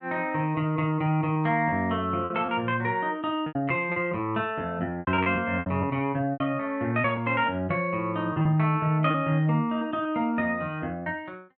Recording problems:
packet loss; 7% of the sound replaced, filled with repeated pitch periods

